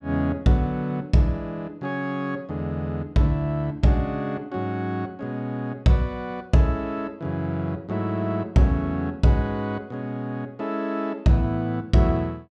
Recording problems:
none

